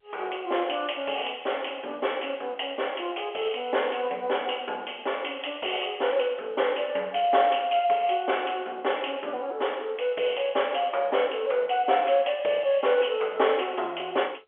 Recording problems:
phone line; 340 Hz to 3.4 kHz, G.711

